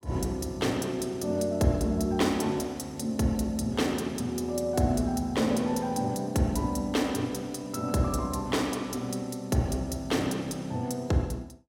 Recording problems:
none

